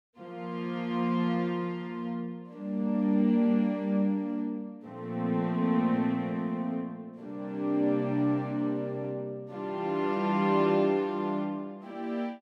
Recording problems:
none

